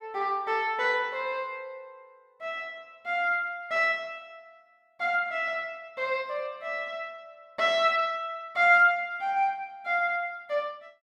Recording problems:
none

